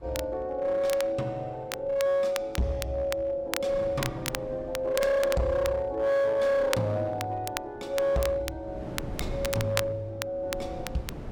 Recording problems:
distortion; hard clipping, uneven, signal-to-distortion ratio 10 dB
wind noise; below 300 Hz, SNR 16 dB
crackle; vinyl, SNR 10 dB

